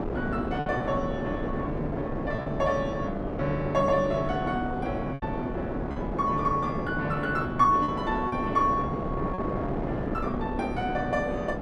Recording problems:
wind on the microphone; below 570 Hz, SNR 3 dB
packet loss; 3% of the sound replaced, filled with repeated pitch periods

